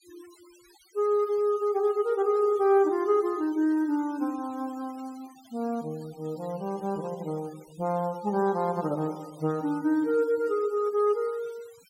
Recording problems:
noise reduction artefacts; signal-to-artefact ratio 26 dB

